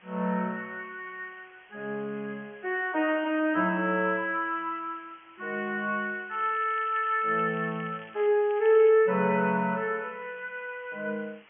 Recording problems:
treble missing; nothing above 3.1 kHz
hiss; SNR 27 dB
crackling; from 6.5 to 8.5 s and at 8.5 s; loose cable, SNR 23 dB

